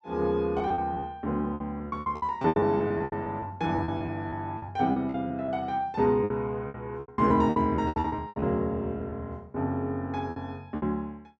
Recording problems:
lost packets; 16% of the sound replaced, filled with repeated pitch periods

